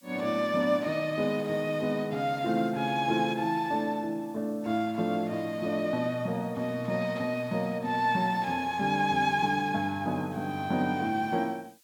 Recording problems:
hiss; slope +3 dB per octave, SNR 29 dB

